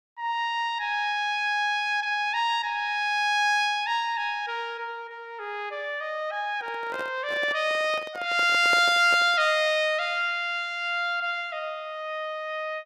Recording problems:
handling noise; from 6.5 to 9.5 s; peak -4 dB vs average level

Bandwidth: 15.5 kHz